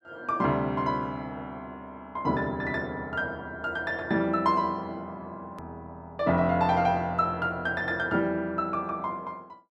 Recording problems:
edit click; at 5.5 s

